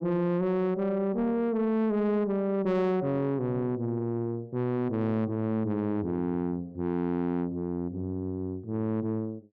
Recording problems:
distorted audio; soft clipping, signal-to-distortion ratio 11 dB

